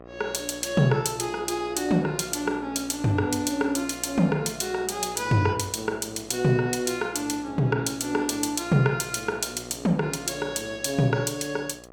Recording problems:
hum; 60 Hz, harmonics up to 2 kHz, SNR 18 dB

